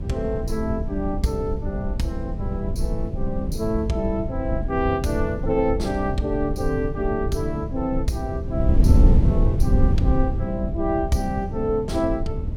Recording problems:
wind noise; below 100 Hz, SNR 0 dB

